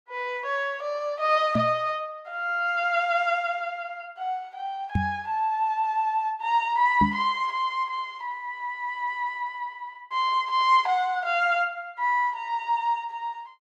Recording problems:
knock on the microphone; at 1.5 s, at 5 s and at 7 s; peak +5 dB vs average level

